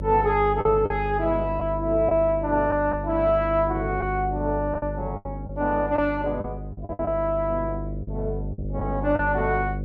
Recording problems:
electrical hum; 50 Hz, harmonics up to 600 Hz, SNR 8 dB
lost packets; 5% of the sound replaced, filled with the last packet

